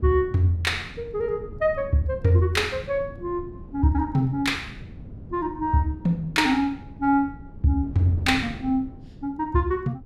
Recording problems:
wind noise; below 210 Hz, SNR 16 dB

